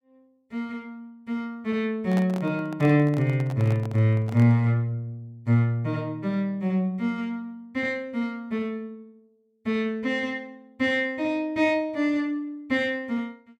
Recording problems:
handling noise; from 2 to 4.5 s; peak -5 dB vs average level

